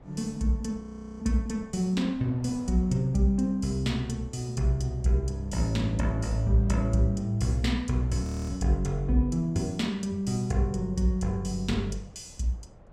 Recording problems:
wind on the microphone; below 450 Hz, SNR 22 dB
audio freezing; at 1 s and at 8 s

